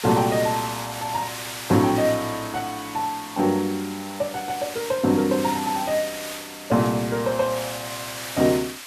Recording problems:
background hiss; SNR 10 dB

